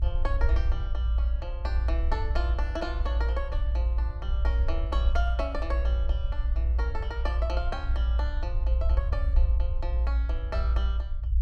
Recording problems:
rumble; below 60 Hz, strongest tone 58 Hz, SNR -9 dB

